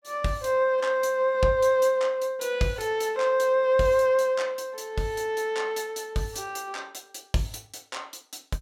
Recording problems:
none

